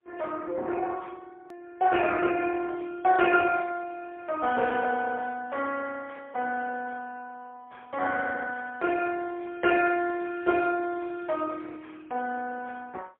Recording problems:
telephone audio; 320 Hz to 3.4 kHz, AMR-NB, then MP3
hard cut with a click; at 1.5 s

